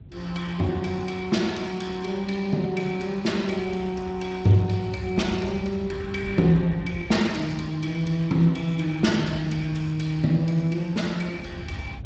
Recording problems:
lossy compression; Speex, log-spectral distance 4 dB
wind on the microphone; below 130 Hz, SNR 16 dB

